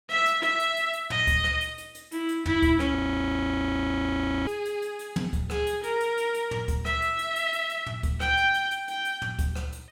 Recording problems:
frozen audio; at 3 s for 1.5 s

